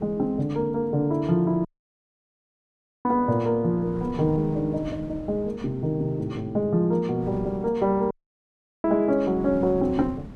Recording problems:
wind noise; below 270 Hz, SNR 16 dB
audio cutting out; at 1.5 s for 1.5 s and at 8 s for 0.5 s

